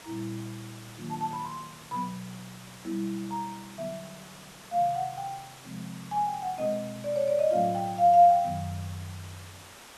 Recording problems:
background hiss; slope -2 dB per octave, SNR 19 dB

